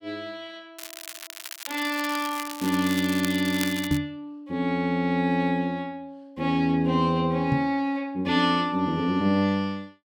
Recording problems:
crackling; from 1 to 4 s; loose cable, SNR 11 dB
microphone bump; at 4 s and at 7.5 s; peak +3 dB vs average level

